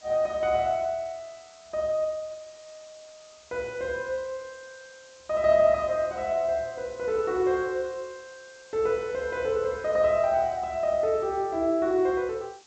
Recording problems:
low-pass filter; nothing above 8 kHz
hiss; slope 0 dB per octave, SNR 25 dB

